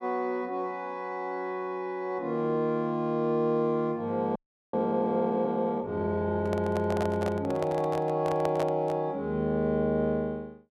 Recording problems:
audio freezing; at 4.5 s
handling noise; from 6.5 to 9 s; peak -1 dB vs average level

